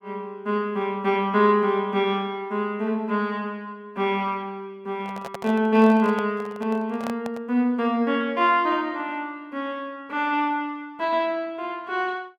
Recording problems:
microphone handling noise; from 5 to 7.5 s; peak -6 dB vs average level

